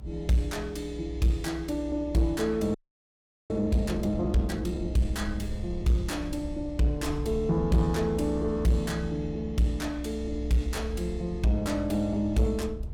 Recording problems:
distortion; soft clipping, signal-to-distortion ratio 10 dB
rumble; below 66 Hz, strongest tone 62 Hz, SNR 10 dB
frozen audio; at 2.5 s for 1 s

